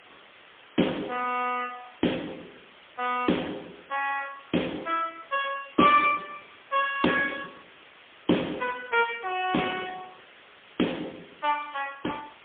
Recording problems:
phone line; 260 Hz to 3.4 kHz, AMR-NB, then MP3
background hiss; SNR 23 dB

